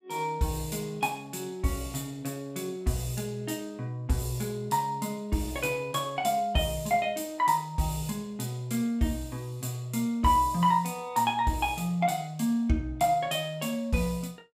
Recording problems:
none

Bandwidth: 15.5 kHz